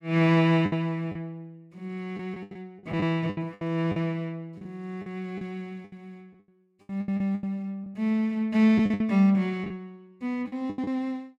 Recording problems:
packet loss; 12% of the sound replaced, filled with the last packet

